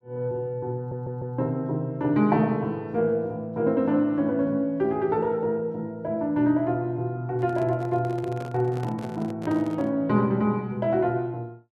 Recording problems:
stutter; at 1 s
handling noise; from 7.5 to 10 s; peak -8 dB vs average level

